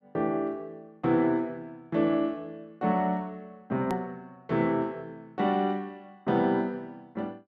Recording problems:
click at an edit; at 4 s

